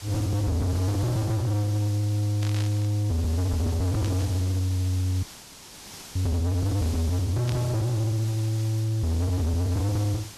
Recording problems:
distortion; soft clipping, signal-to-distortion ratio 5 dB
hiss; slope -1 dB per octave, SNR 15 dB
burst of static; at 2.5 s, at 4 s and at 7.5 s; peak -8 dB vs average level
dropout; at 5 s for 1 s

